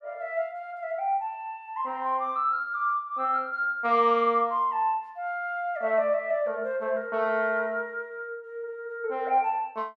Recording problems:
none

